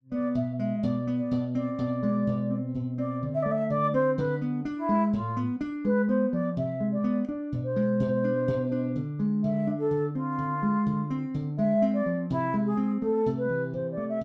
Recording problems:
none

